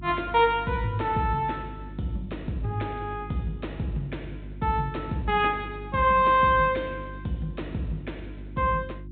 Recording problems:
treble cut off; nothing above 4 kHz
hum; 50 Hz, harmonics up to 350 Hz, SNR 14 dB

